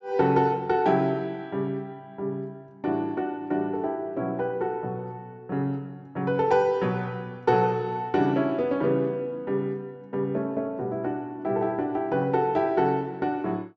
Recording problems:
low-pass filter; nothing above 8 kHz

